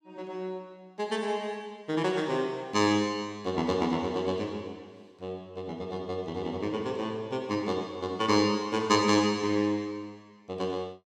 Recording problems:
none

